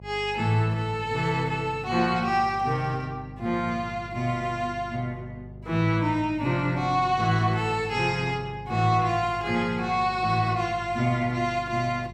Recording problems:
hum; 50 Hz, harmonics up to 650 Hz, SNR 17 dB

